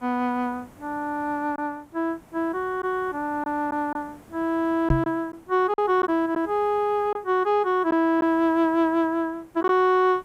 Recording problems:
background hiss; slope -7 dB per octave, SNR 27 dB
lost packets; 3% of the sound replaced, filled with silence
knock on the microphone; at 5 s; peak +5 dB vs average level

